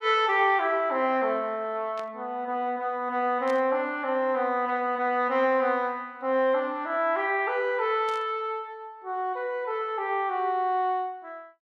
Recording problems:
static burst; at 2 s, at 3.5 s and at 8 s; peak -13 dB vs average level

